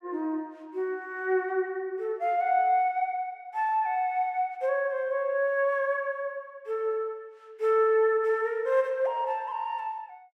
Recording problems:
none

